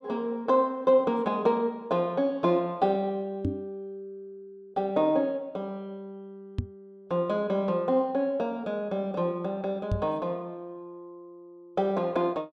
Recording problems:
microphone bump; at 3.5 s, at 6.5 s and at 10 s; peak +2 dB vs average level

